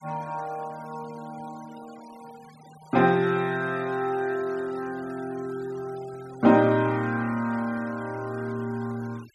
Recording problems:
denoising artefacts; signal-to-artefact ratio 23 dB

